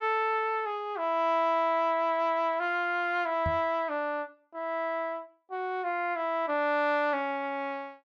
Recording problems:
knock on the microphone; at 3.5 s; peak -1 dB vs average level

